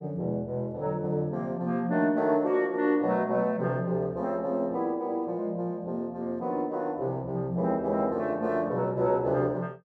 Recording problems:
none

